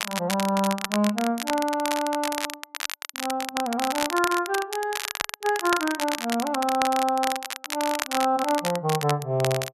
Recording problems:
crackling; vinyl, SNR 6 dB

